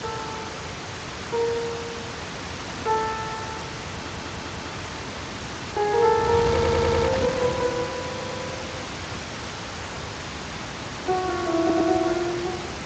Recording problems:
lossy codec; Speex, log-spectral distance 10 dB
hiss; slope -2 dB per octave, SNR 9 dB
wind noise; below 1.3 kHz, SNR 9 dB
stutter; 4 times, first at 4 s

